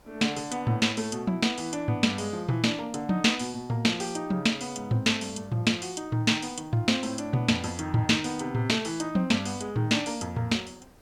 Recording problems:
hiss; slope -6 dB per octave, SNR 30 dB

